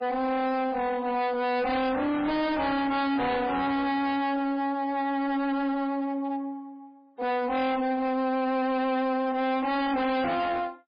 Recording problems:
lossy compression; MP3, log-spectral distance 2 dB, nothing above 4.1 kHz
distorted audio; hard clipping, uneven, signal-to-distortion ratio 6 dB

